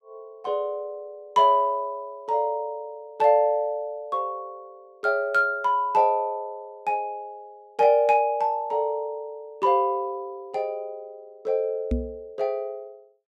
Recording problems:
microphone bump; at 12 s; peak +2 dB vs average level

